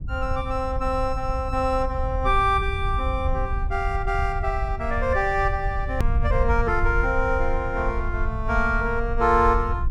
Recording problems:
low-frequency rumble; below 72 Hz, SNR 4 dB
hard cut with a click; at 6 s

